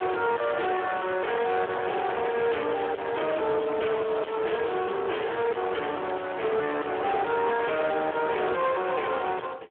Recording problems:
phone line; 320 Hz to 3.3 kHz, Speex
distortion; soft clipping, signal-to-distortion ratio 6 dB

